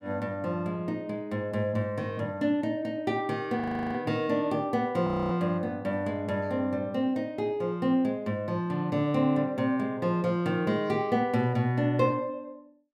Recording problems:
frozen audio; at 3.5 s and at 5 s

